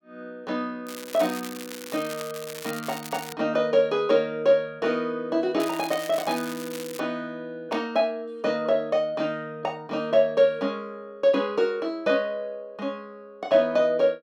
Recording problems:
crackle; from 1 to 3.5 s and from 5.5 to 7 s; loose cable, SNR 13 dB

